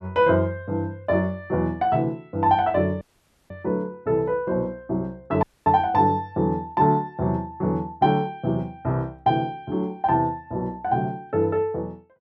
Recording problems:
audio cutting out; at 3 s and at 5.5 s

